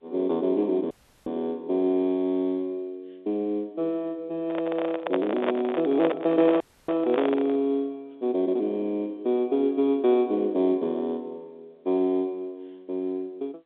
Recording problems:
telephone audio; 240 Hz to 3.8 kHz, G.711
audio cutting out; at 1 s and at 6.5 s
handling noise; from 4.5 to 7.5 s; peak +3 dB vs average level

